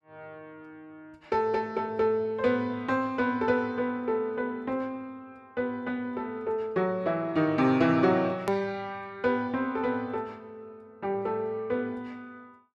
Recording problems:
click at an edit; at 8.5 s

